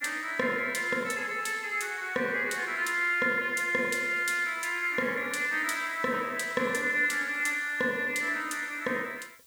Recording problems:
hiss; SNR 28 dB

